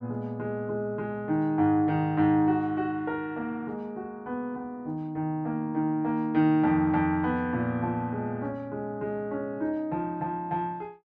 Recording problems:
none

